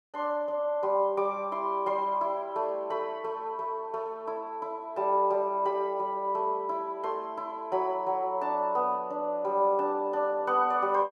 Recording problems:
none

